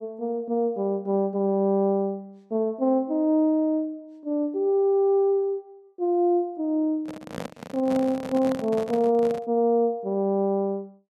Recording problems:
microphone handling noise; from 7 to 9.5 s; peak -6 dB vs average level

